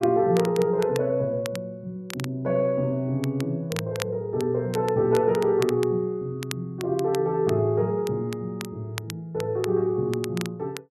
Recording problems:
crackle; vinyl, SNR 15 dB

